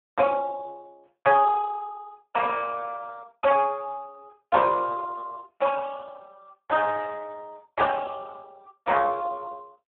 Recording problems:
telephone audio; 320 Hz to 2.1 kHz, Speex

